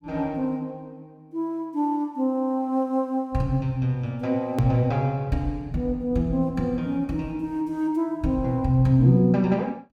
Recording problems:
hard cut with a click; at 4.5 s

